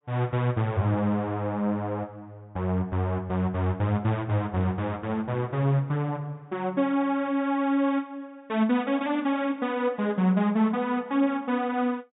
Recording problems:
treble missing; nothing above 4 kHz

